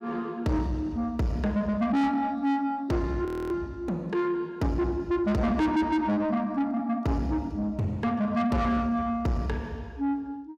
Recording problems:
distortion; soft clipping, signal-to-distortion ratio 8 dB
frozen audio; at 3.5 s

